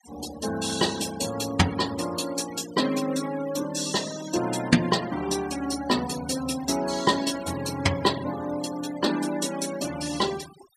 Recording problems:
denoising artefacts; signal-to-artefact ratio 13 dB

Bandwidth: 15 kHz